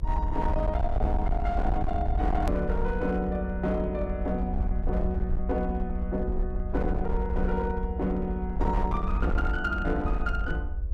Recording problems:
distortion; hard clipping, signal-to-distortion ratio 11 dB
hum; 50 Hz, harmonics up to 1.3 kHz, SNR 25 dB
low-frequency rumble; below 66 Hz, SNR 1 dB
click at an edit; at 2.5 s

